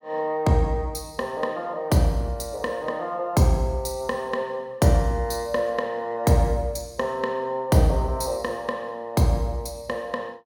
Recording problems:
none

